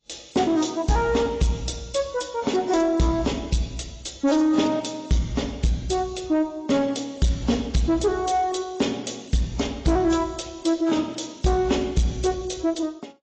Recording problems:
lossy codec; AAC, log-spectral distance 5 dB, nothing above 8 kHz
distorted audio; soft clipping, signal-to-distortion ratio 12 dB

